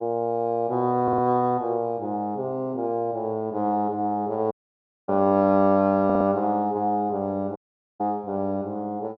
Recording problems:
audio stuttering; at 1 s and at 6 s
audio cutting out; at 4.5 s for 0.5 s and at 7.5 s

